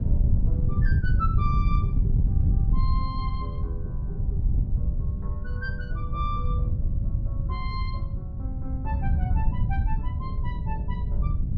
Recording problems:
wind on the microphone; below 100 Hz, SNR -10 dB

